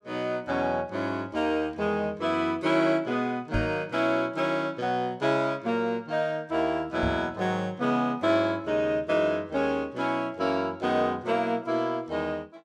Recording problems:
microphone thump; at 3.5 s and at 7 s; peak +1 dB vs average level

